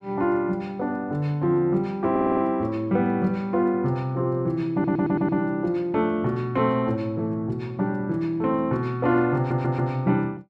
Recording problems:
audio stuttering; at 2 s, at 4.5 s and at 9.5 s

